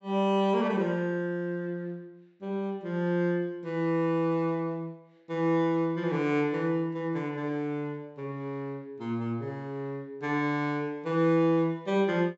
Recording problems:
treble cut off; nothing above 7.6 kHz

